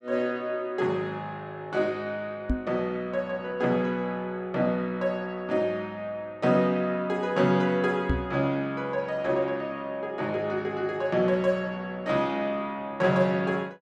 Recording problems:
knock on the microphone; at 2.5 s and at 8 s; peak +4 dB vs average level

